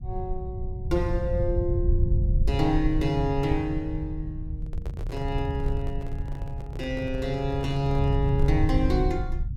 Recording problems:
low-frequency rumble; below 94 Hz, SNR 1 dB
handling noise; from 4.5 to 8.5 s; peak -10 dB vs average level

